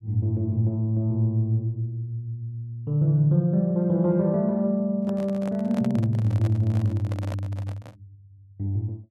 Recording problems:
microphone handling noise; from 5 to 8 s; peak -8 dB vs average level

